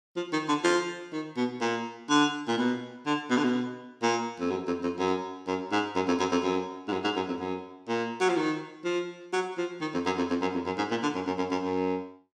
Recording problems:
none

